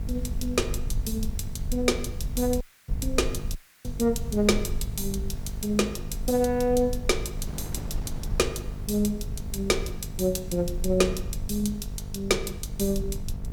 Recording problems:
electrical hum; 50 Hz, harmonics up to 900 Hz, SNR 12 dB
background hiss; SNR 27 dB
rumble; below 70 Hz, SNR 8 dB
wind noise; below 440 Hz, SNR 21 dB
dropout; at 2.5 s and at 3.5 s

